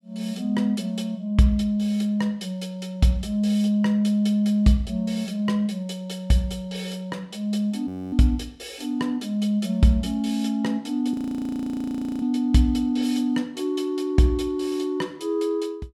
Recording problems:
audio freezing; at 8 s and at 11 s for 1 s

